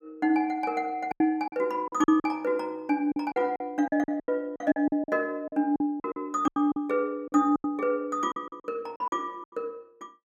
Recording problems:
packet loss; 14% of the sound replaced, filled with silence

